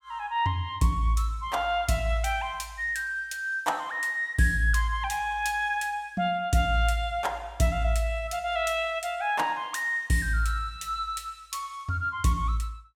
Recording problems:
none

